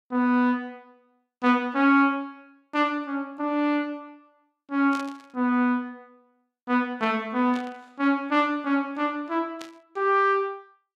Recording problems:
burst of static; at 5 s, at 7.5 s and at 9.5 s; peak -11 dB vs average level

